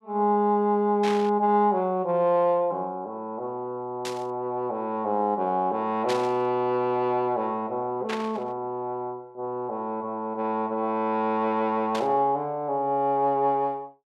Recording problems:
burst of static; 5 times, first at 1 s; peak -3 dB vs average level

